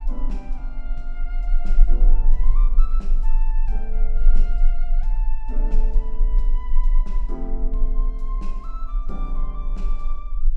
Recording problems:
rumble; below 30 Hz, strongest tone 20 Hz, SNR -15 dB

